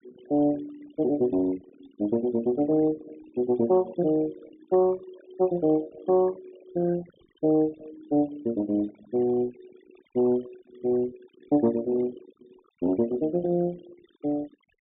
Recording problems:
low-pass filter; nothing above 3.7 kHz
denoising artefacts; signal-to-artefact ratio 21 dB

